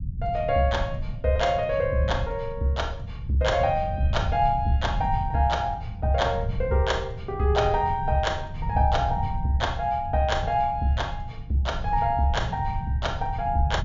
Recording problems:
low-pass filter; nothing above 7.3 kHz
low-frequency rumble; below 120 Hz, SNR 7 dB

